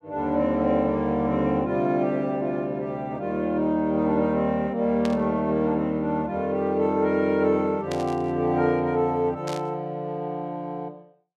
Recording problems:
static burst; at 5 s, at 8 s and at 9.5 s; peak -7 dB vs average level

